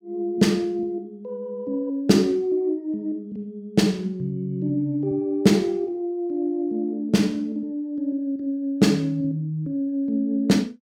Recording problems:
none

